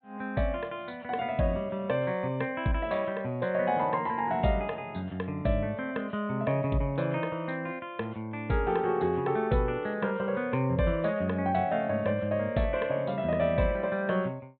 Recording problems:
treble cut off; nothing above 4 kHz

